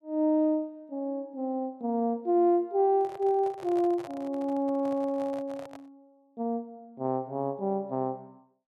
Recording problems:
microphone handling noise; from 3 to 6 s; peak -11 dB vs average level

